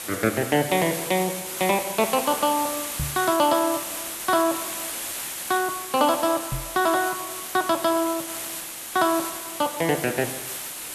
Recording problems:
hiss; slope 0 dB per octave, SNR 6 dB
knock on the microphone; at 3 s and at 6.5 s; peak -2 dB vs average level

